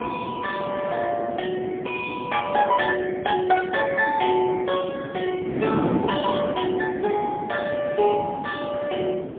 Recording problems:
phone line; 240 Hz to 3.3 kHz, AMR-NB, then MP3
wind on the microphone; below 440 Hz, SNR 7 dB

